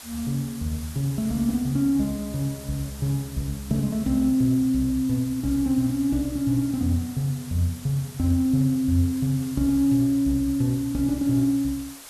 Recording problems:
hiss; slope 0 dB per octave, SNR 17 dB

